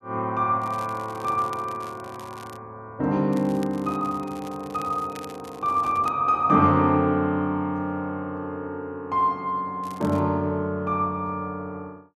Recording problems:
crackle; from 0.5 to 2.5 s, from 3.5 to 6 s and at 10 s; loose cable, SNR 23 dB

